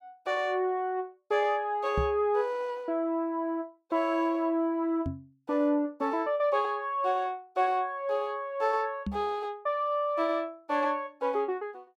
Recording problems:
microphone bump; at 2 s, at 5 s and at 9 s; peak +1 dB vs average level

